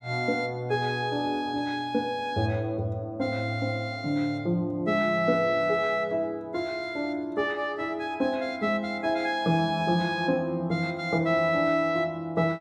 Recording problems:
none

